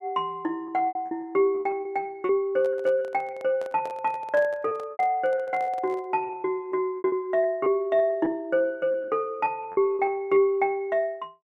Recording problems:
packet loss; 11% of the sound replaced, filled with repeated pitch periods
handling noise; from 2.5 to 6 s; peak -10 dB vs average level

